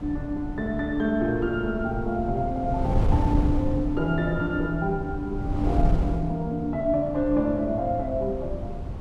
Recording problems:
wind on the microphone; below 140 Hz, SNR 4 dB

